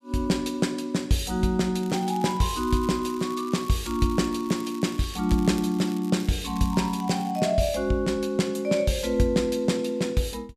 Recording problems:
crackle; at 2 s and from 2.5 to 7.5 s; loose cable, SNR 21 dB

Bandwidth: 14.5 kHz